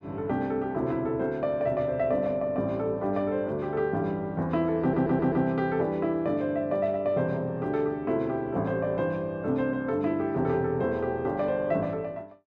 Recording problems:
stutter; at 5 s

